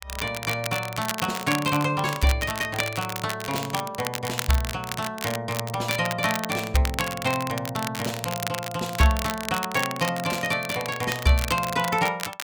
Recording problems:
crackling; vinyl, SNR 7 dB

